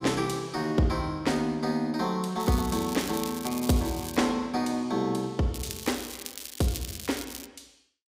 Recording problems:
crackling; from 2.5 to 4 s and from 5.5 to 7.5 s; loose cable, SNR 10 dB

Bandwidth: 15.5 kHz